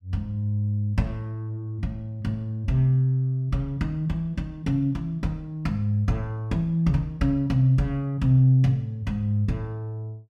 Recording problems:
none

